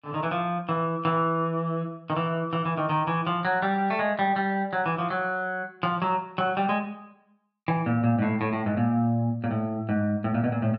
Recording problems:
none

